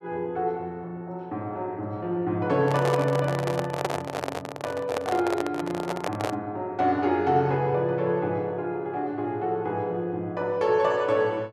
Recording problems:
microphone handling noise; from 2.5 to 6.5 s; peak +3 dB vs average level

